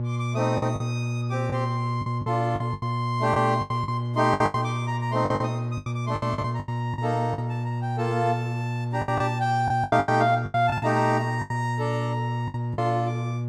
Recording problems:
mains hum; 60 Hz, harmonics up to 840 Hz, SNR 2 dB
packet loss; 12% of the sound replaced, filled with the last packet

